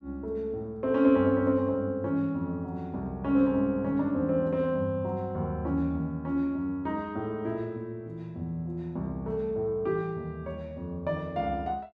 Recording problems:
none

